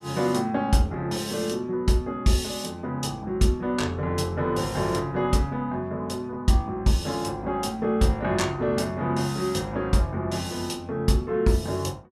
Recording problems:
none

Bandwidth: 14 kHz